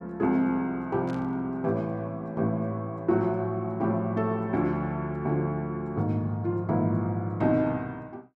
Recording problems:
static burst; at 1 s; peak -15 dB vs average level

